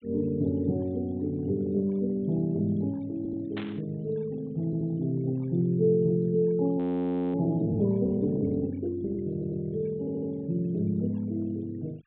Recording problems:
treble cut off; nothing above 4 kHz
denoising artefacts; signal-to-artefact ratio 28 dB
stutter; 4 times, first at 3 s
static burst; at 3.5 s; peak -7 dB vs average level
audio freezing; at 7 s for 0.5 s

